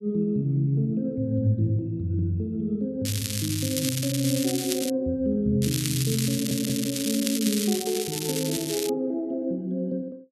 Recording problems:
crackling; from 3 to 5 s and from 5.5 to 9 s; loose cable, SNR 4 dB
audio stuttering; at 6.5 s

